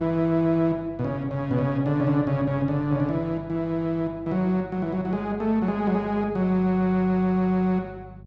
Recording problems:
electrical hum; 50 Hz, harmonics up to 450 Hz, SNR 20 dB

